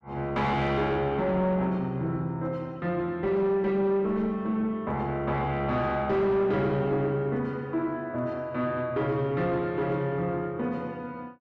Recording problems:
distortion; soft clipping, signal-to-distortion ratio 10 dB

